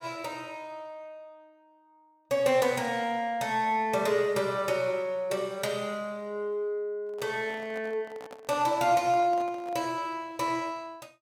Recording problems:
microphone handling noise; from 7 to 10 s; peak -12 dB vs average level

